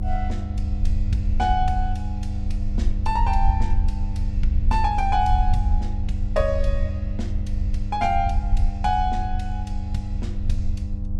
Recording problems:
mains hum; 50 Hz, harmonics up to 800 Hz, SNR 6 dB
rumble; below 74 Hz, strongest tone 26 Hz, SNR 0 dB

